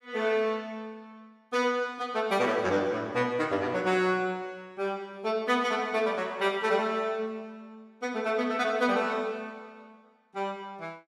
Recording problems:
none

